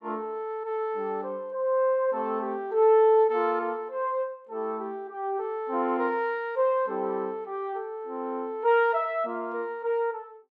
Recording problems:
none

